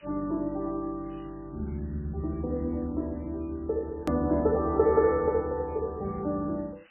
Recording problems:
codec artefacts; MP3, log-spectral distance 15 dB, nothing above 13.1 kHz
background hiss; SNR 27 dB
click at an edit; at 4 s

